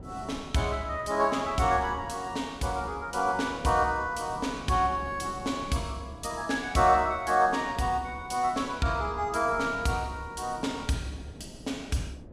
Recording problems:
wind on the microphone; below 360 Hz, SNR 17 dB

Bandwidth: 15 kHz